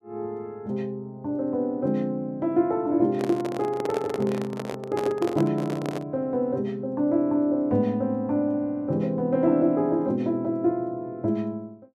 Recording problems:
microphone handling noise; from 3 to 6 s; peak -1 dB vs average level

